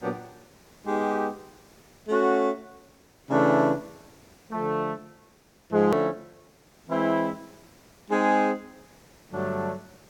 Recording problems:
background hiss; SNR 29 dB
edit click; at 6 s

